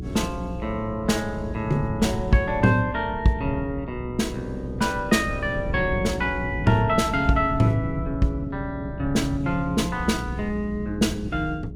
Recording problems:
electrical hum; 60 Hz, harmonics up to 420 Hz, SNR 12 dB
wind on the microphone; below 160 Hz, SNR 11 dB

